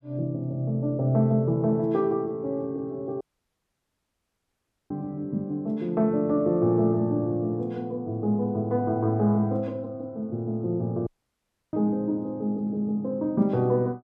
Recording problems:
audio cutting out; at 3 s for 1.5 s and at 11 s for 0.5 s

